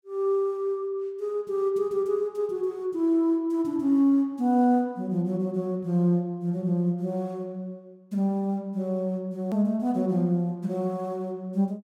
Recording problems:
hard cut with a click; at 9.5 s

